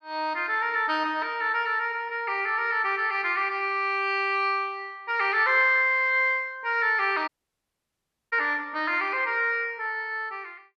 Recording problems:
dropout; at 7.5 s for 1 s

